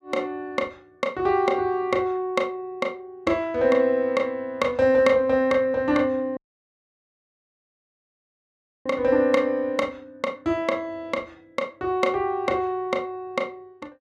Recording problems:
audio cutting out; at 6.5 s for 2.5 s

